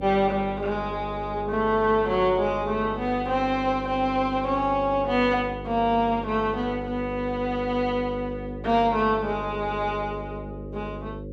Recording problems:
hum; 50 Hz, harmonics up to 550 Hz, SNR 12 dB

